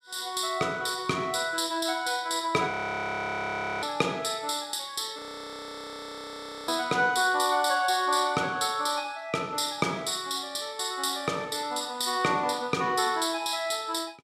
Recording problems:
audio freezing; at 2.5 s for 1 s and at 5 s for 1.5 s

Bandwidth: 14.5 kHz